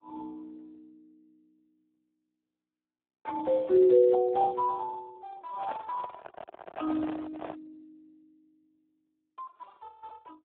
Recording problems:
phone line; 320 Hz to 2.2 kHz, Speex
microphone handling noise; from 5.5 to 7.5 s; peak -8 dB vs average level

